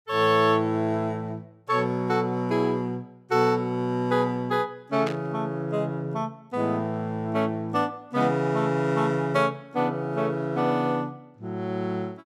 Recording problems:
burst of static; at 5 s; peak -5 dB vs average level

